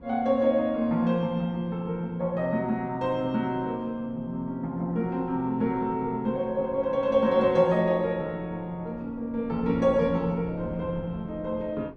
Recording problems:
wind on the microphone; below 330 Hz, SNR 18 dB

